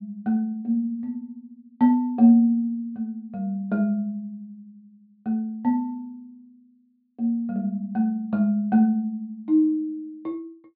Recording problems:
treble cut off; nothing above 4.7 kHz

